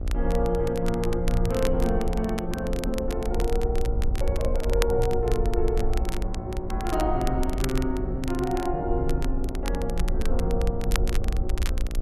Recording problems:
hum; 60 Hz, harmonics up to 1.4 kHz, SNR 12 dB
wind on the microphone; below 56 Hz, SNR 2 dB
crackle; vinyl, SNR 11 dB

